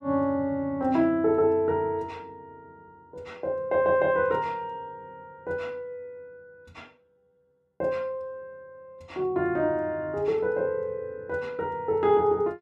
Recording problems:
none

